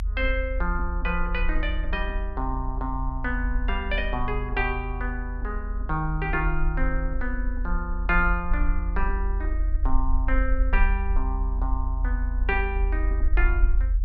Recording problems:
rumble; below 46 Hz, strongest tone 42 Hz, SNR -1 dB

